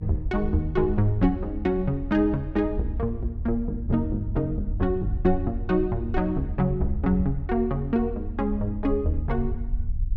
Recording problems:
rumble; below 78 Hz, SNR 7 dB

